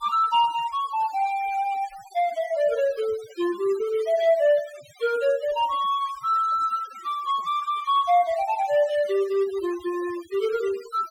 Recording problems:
noise reduction artefacts; signal-to-artefact ratio 19 dB

